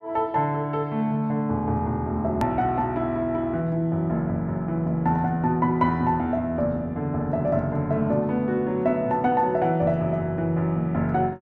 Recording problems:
edit click; at 2.5 s

